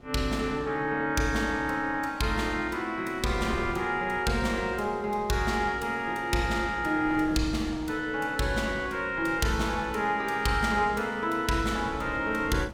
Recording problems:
wind on the microphone; below 400 Hz, SNR 19 dB

